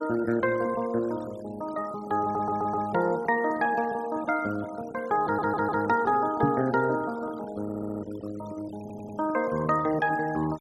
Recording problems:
denoising artefacts; signal-to-artefact ratio 19 dB
stutter; 4 times, first at 2 s
knock on the microphone; at 6.5 s; peak +6 dB vs average level

